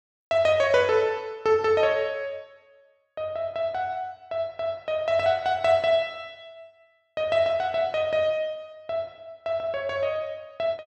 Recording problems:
none

